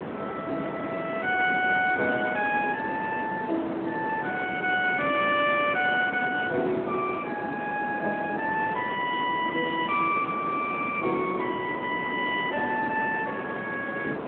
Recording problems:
telephone audio; 300 Hz to 3.5 kHz, Speex
hiss; SNR 7 dB

